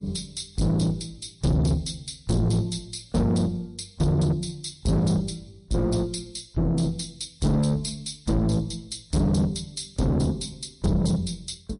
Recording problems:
codec artefacts; MP3, log-spectral distance 5 dB, nothing above 10.4 kHz
distortion; soft clipping, signal-to-distortion ratio 8 dB

